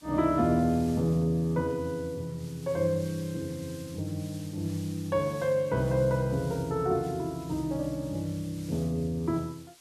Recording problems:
background hiss; slope +1 dB per octave, SNR 20 dB

